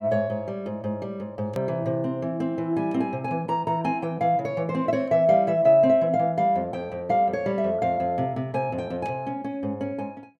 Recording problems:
click at an edit; at 1.5 s

